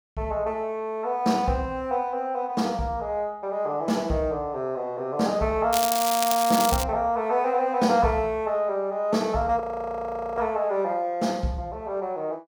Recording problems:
crackle; from 5.5 to 7 s; loose cable, SNR 3 dB
frozen audio; at 9.5 s for 1 s

